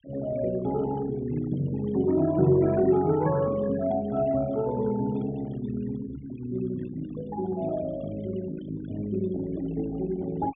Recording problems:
low-pass filter; nothing above 3.6 kHz
noise reduction artefacts; signal-to-artefact ratio 19 dB

